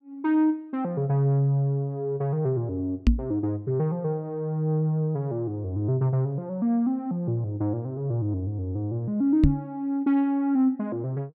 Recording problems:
microphone thump; at 3 s and at 9.5 s; peak +9 dB vs average level

